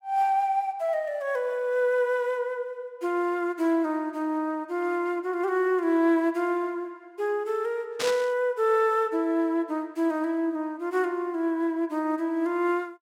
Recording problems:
static burst; at 8 s; peak 0 dB vs average level

